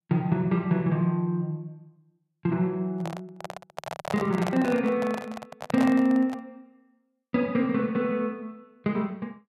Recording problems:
microphone handling noise; from 3 to 6.5 s; peak 0 dB vs average level

